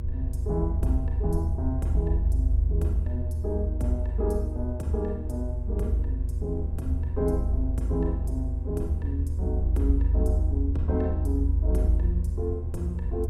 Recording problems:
mains hum; 60 Hz, harmonics up to 960 Hz, SNR 12 dB
rumble; below 78 Hz, strongest tone 52 Hz, SNR -5 dB

